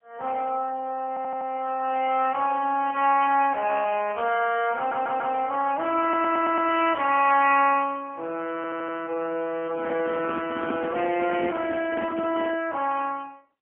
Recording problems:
telephone audio; 240 Hz to 3.1 kHz, AMR-NB, then MP3
audio stuttering; 4 times, first at 1 s
microphone handling noise; from 9.5 to 13 s; peak -1 dB vs average level

